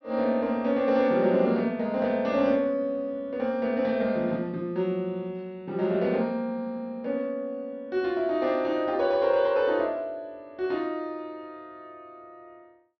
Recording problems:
low-pass filter; nothing above 5.9 kHz

